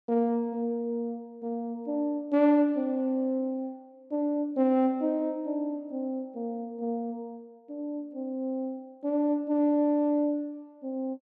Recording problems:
none

